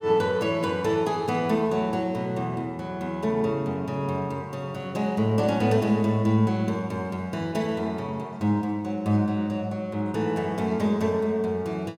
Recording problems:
none

